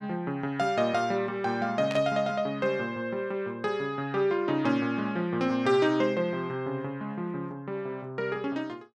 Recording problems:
static burst; at 2 s; peak -5 dB vs average level

